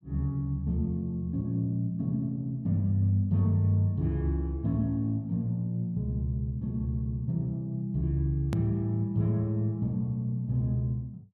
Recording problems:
edit click; at 8.5 s

